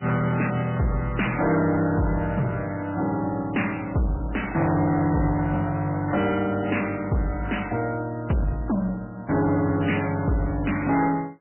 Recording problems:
lossy codec; MP3, log-spectral distance 4 dB, nothing above 2.8 kHz
distorted audio; soft clipping, signal-to-distortion ratio 11 dB

